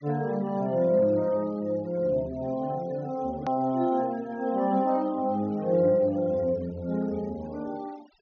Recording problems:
treble missing; nothing above 6.3 kHz
denoising artefacts; signal-to-artefact ratio 25 dB
click at an edit; at 3.5 s

